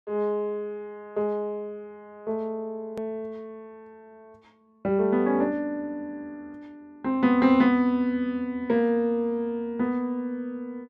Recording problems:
click at an edit; at 3 s

